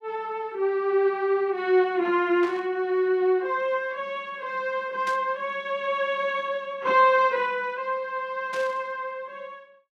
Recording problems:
burst of static; at 2.5 s, at 5 s and at 8.5 s; peak -9 dB vs average level

